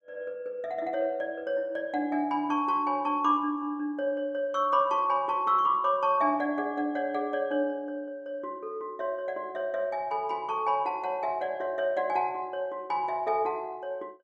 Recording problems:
none

